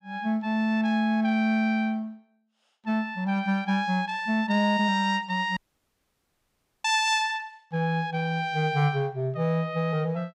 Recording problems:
audio cutting out; at 5.5 s for 1.5 s

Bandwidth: 15.5 kHz